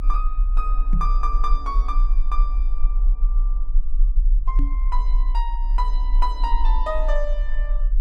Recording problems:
low-frequency rumble; below 36 Hz, strongest tone 34 Hz, SNR -7 dB
microphone thump; at 1 s and at 4.5 s; peak +6 dB vs average level

